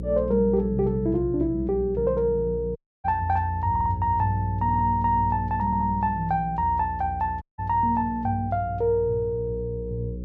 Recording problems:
electrical hum; 60 Hz, harmonics up to 540 Hz, SNR 11 dB
audio cutting out; at 3 s and at 7.5 s
stutter; at 3.5 s, at 4.5 s and at 5.5 s

